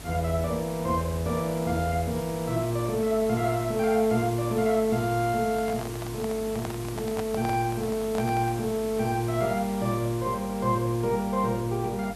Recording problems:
electrical hum; 50 Hz, harmonics up to 400 Hz, SNR 19 dB
hiss; slope -3 dB per octave, SNR 14 dB
handling noise; from 5.5 to 8.5 s; peak -4 dB vs average level

